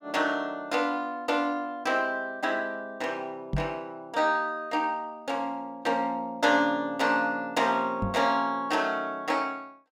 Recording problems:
microphone thump; at 3.5 s and at 8 s; peak +2 dB vs average level

